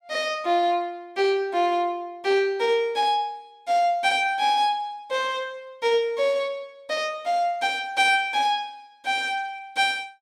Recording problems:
none

